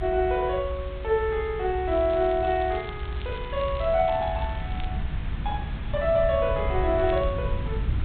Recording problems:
treble cut off; nothing above 4 kHz
background hiss; SNR 18 dB
low-frequency rumble; below 92 Hz, SNR 7 dB
crackling; from 2 to 5 s and at 7 s; loose cable, SNR 22 dB

